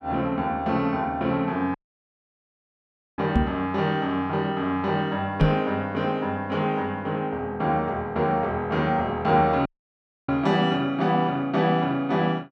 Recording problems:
dropout; at 2 s for 1.5 s and at 9.5 s for 0.5 s
microphone bump; at 3.5 s and at 5.5 s; peak +7 dB vs average level

